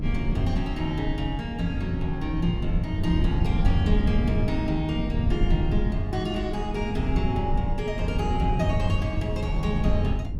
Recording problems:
rumble; below 120 Hz, SNR 0 dB

